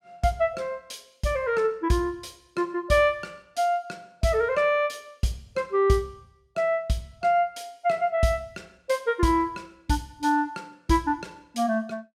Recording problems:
none

